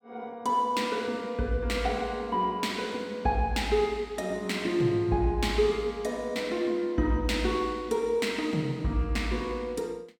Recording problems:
none

